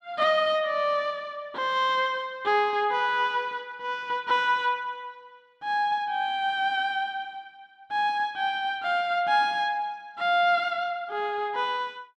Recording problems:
none

